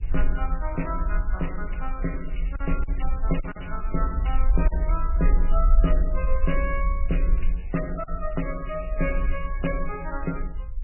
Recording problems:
lossy codec; MP3, log-spectral distance 3 dB, nothing above 2.5 kHz
rumble; below 46 Hz, SNR -3 dB
lost packets; 2% of the sound replaced, filled with silence

